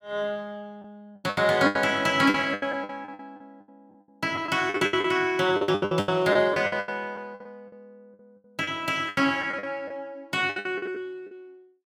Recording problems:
lost packets; 18% of the sound replaced, filled with the last packet

